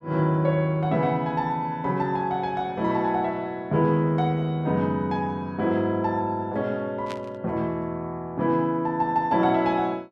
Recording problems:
static burst; at 7 s; peak -9 dB vs average level

